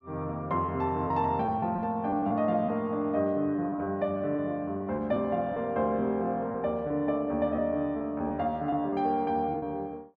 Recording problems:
packet loss; 6% of the sound replaced, filled with repeated pitch periods

